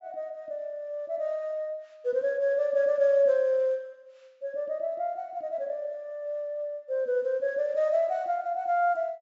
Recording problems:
treble missing; nothing above 8 kHz

